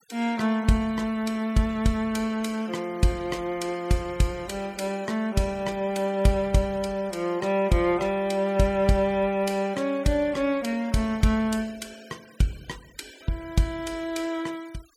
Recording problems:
noise reduction artefacts; signal-to-artefact ratio 24 dB

